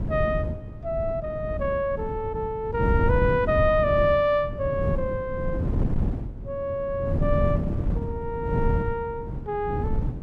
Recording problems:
wind noise; below 170 Hz, SNR 3 dB

